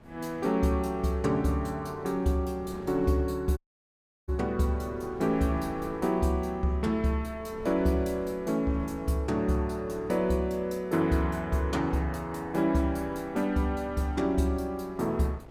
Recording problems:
wind noise; below 470 Hz, SNR 20 dB
audio cutting out; at 3.5 s for 0.5 s

